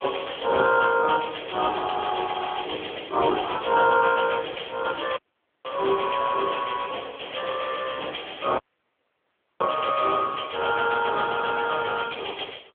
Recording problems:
phone line; 240 Hz to 2.3 kHz, AMR-NB
dropout; at 5 s and at 8.5 s for 1 s

